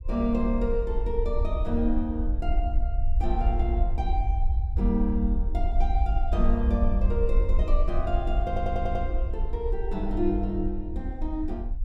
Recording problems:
low-frequency rumble; below 56 Hz, SNR -1 dB
audio stuttering; at 8.5 s

